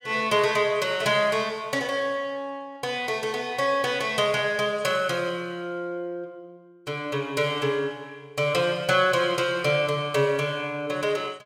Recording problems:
none

